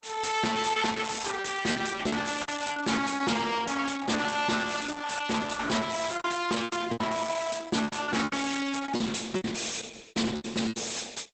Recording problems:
codec artefacts; Opus, log-spectral distance 9 dB, nothing above 8 kHz
distorted audio; soft clipping, signal-to-distortion ratio 6 dB
lost packets; 11% of the sound replaced, filled with repeated pitch periods

